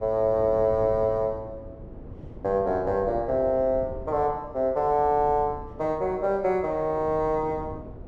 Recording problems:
wind on the microphone; below 320 Hz, SNR 16 dB

